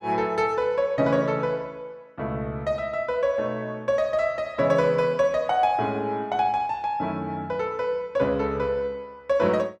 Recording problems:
none

